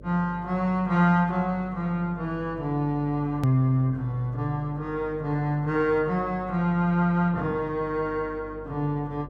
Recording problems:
hum; 50 Hz, harmonics up to 600 Hz, SNR 19 dB
hard cut with a click; at 3.5 s

